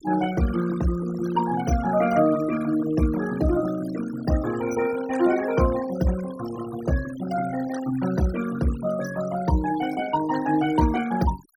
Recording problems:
denoising artefacts; signal-to-artefact ratio 14 dB

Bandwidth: 17 kHz